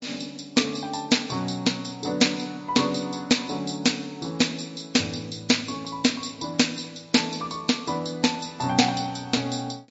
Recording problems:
low-pass filter; nothing above 7.6 kHz
codec artefacts; MP3, log-spectral distance 6 dB

